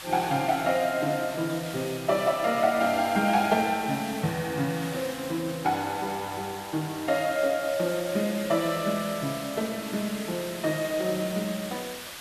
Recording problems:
background hiss; SNR 11 dB

